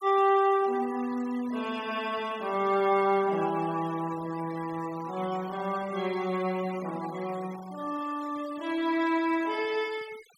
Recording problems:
noise reduction artefacts; signal-to-artefact ratio 20 dB

